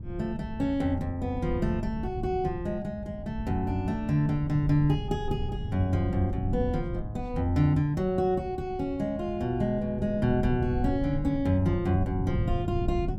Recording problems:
wind on the microphone; below 140 Hz, SNR 7 dB

